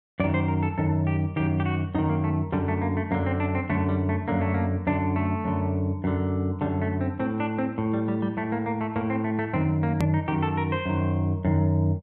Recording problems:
edit click; at 10 s

